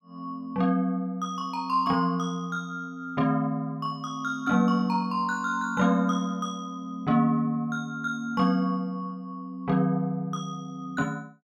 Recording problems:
none

